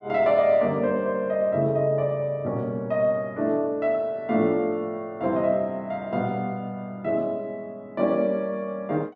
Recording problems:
none

